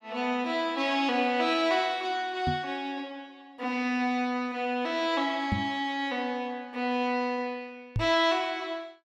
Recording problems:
knock on the microphone; at 2.5 s, at 5.5 s and at 8 s; peak +3 dB vs average level

